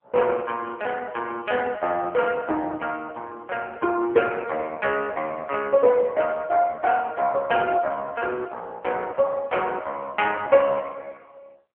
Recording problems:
telephone audio; 280 Hz to 3.2 kHz, AMR-NB

